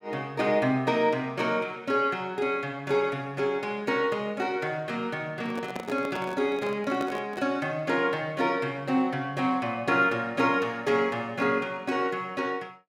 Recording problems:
microphone handling noise; from 5.5 to 7.5 s; peak -4 dB vs average level

